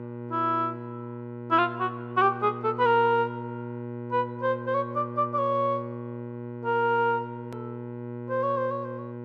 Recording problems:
electrical hum; 60 Hz, harmonics up to 1.6 kHz, SNR 11 dB
edit click; at 7.5 s

